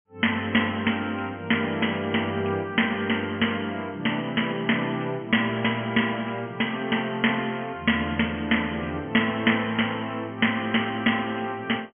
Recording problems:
treble missing; nothing above 3.2 kHz

